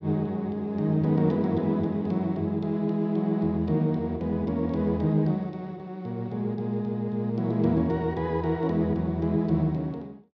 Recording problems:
none

